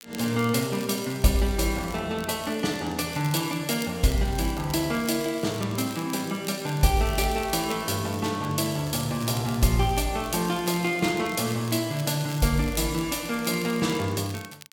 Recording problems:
crackling; vinyl, SNR 18 dB

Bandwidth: 17.5 kHz